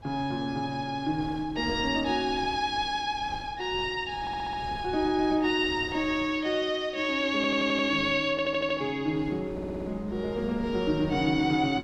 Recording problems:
wind noise; below 420 Hz, SNR 17 dB
audio stuttering; 4 times, first at 4 s

